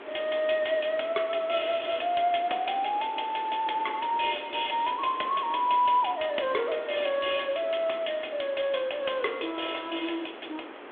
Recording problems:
phone line; 280 Hz to 3.4 kHz, G.726
background hiss; SNR 15 dB

